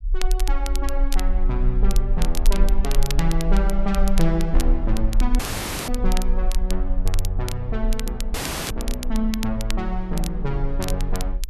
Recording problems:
low-frequency rumble; below 38 Hz, strongest tone 18 Hz, SNR -1 dB
crackling; vinyl, SNR 8 dB
dropout; at 5.5 s and at 8.5 s

